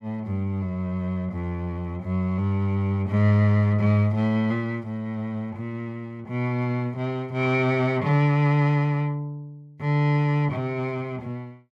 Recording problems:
none

